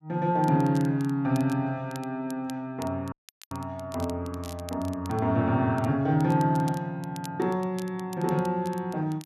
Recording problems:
crackle; vinyl, SNR 22 dB
audio cutting out; at 3 s

